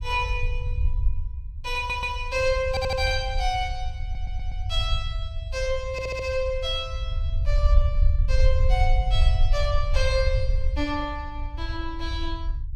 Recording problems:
rumble; below 66 Hz, SNR 0 dB
audio stuttering; 4 times, first at 2 s

